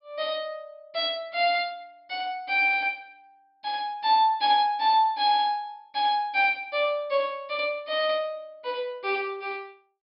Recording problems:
treble cut off; nothing above 5.5 kHz

